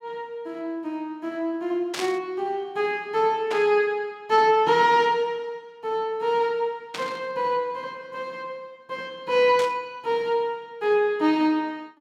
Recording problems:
static burst; 4 times, first at 2 s; peak -3 dB vs average level

